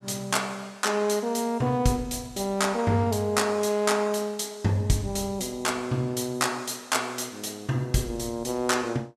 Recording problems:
none

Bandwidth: 14.5 kHz